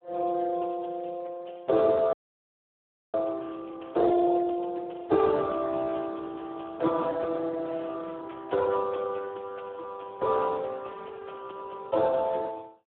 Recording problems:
phone line; 280 Hz to 2 kHz, Speex
frozen audio; at 2 s for 1 s

